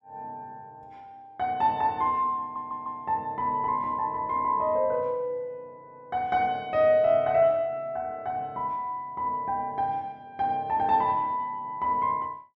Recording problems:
stutter; at 2.5 s

